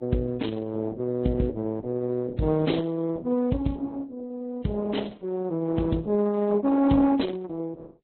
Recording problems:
lossy codec; Opus, then Vorbis, log-spectral distance 3 dB, nothing above 4.1 kHz

